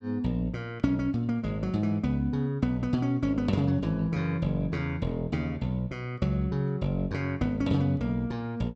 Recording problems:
none

